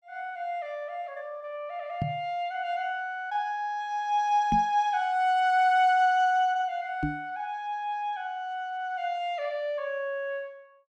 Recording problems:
microphone bump; at 2 s, at 4.5 s and at 7 s; peak +2 dB vs average level

